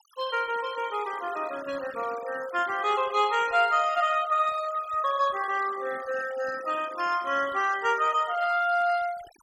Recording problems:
noise reduction artefacts; signal-to-artefact ratio 19 dB

